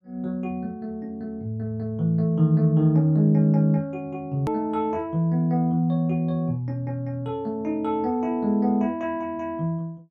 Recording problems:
hard cut with a click; at 4.5 s

